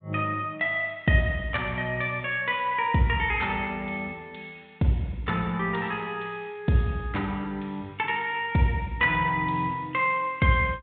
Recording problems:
low-pass filter; nothing above 4 kHz

